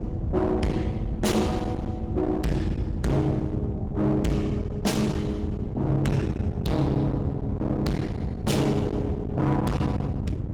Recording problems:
lossy codec; Opus, log-spectral distance 2 dB, nothing above 19 kHz
distortion; hard clipping, signal-to-distortion ratio 6 dB
rumble; below 230 Hz, SNR 4 dB

